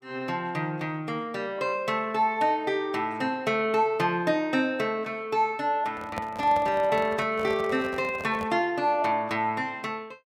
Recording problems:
handling noise; from 6 to 8.5 s; peak -4 dB vs average level

